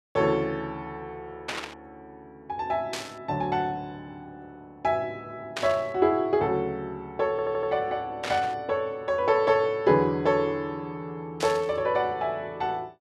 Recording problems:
static burst; 5 times, first at 1.5 s; peak -1 dB vs average level
stutter; at 7.5 s

